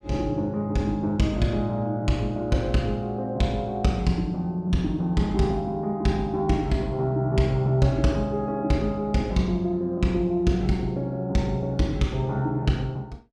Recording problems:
none

